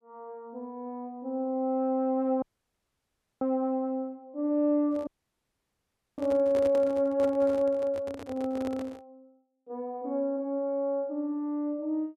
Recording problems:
dropout; at 2.5 s for 1 s and at 5 s for 1 s
handling noise; from 5 to 9 s; peak -6 dB vs average level

